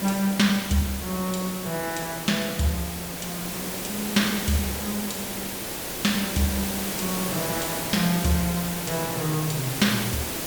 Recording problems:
background hiss; slope -3 dB per octave, SNR 3 dB

